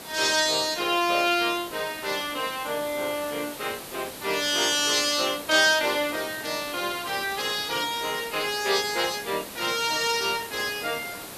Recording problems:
background hiss; slope -3 dB per octave, SNR 13 dB

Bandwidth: 14 kHz